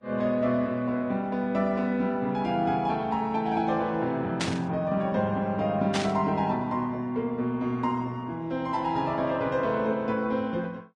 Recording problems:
lossy codec; Vorbis, log-spectral distance 2 dB
burst of static; at 4.5 s and at 6 s; peak +2 dB vs average level

